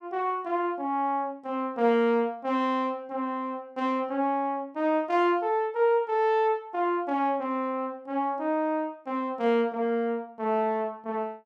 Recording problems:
none

